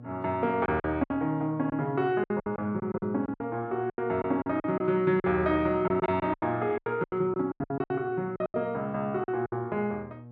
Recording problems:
electrical hum; 60 Hz, harmonics up to 840 Hz, SNR 18 dB
lost packets; 14% of the sound replaced, filled with silence

